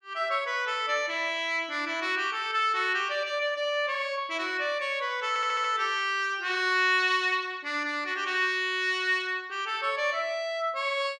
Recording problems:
stutter; at 5.5 s

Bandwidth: 12.5 kHz